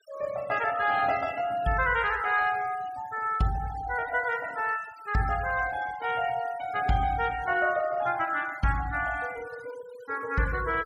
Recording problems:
noise reduction artefacts; signal-to-artefact ratio 19 dB

